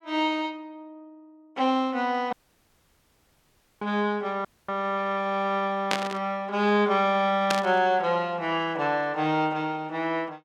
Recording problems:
dropout; at 2.5 s for 1.5 s and at 4.5 s
static burst; at 6 s and at 7.5 s; peak +4 dB vs average level

